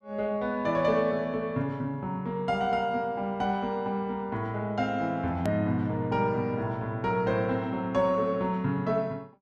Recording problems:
edit click; at 5.5 s

